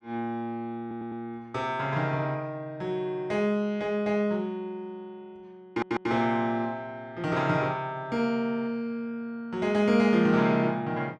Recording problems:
audio stuttering; at 1 s and at 5.5 s

